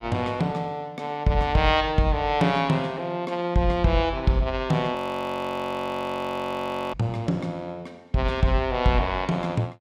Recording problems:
audio freezing; at 5 s for 2 s

